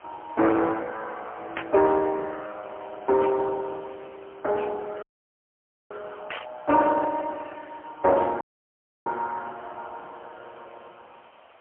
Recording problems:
phone line; 300 Hz to 3.4 kHz, AMR-NB, then MP3
background hiss; SNR 27 dB
static burst; at 1.5 s and at 6.5 s; peak -2 dB vs average level
audio cutting out; at 5 s for 1 s and at 8.5 s for 0.5 s

